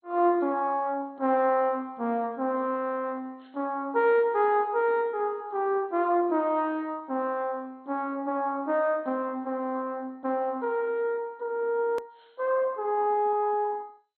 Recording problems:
lossy compression; MP2, log-spectral distance 2 dB
edit click; at 12 s

